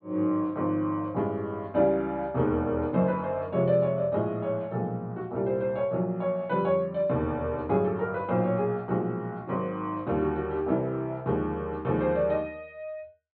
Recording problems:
treble cut off; nothing above 4.4 kHz

